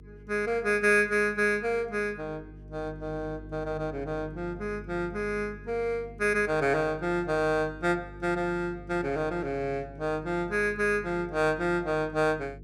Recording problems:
hum; 50 Hz, harmonics up to 450 Hz, SNR 18 dB

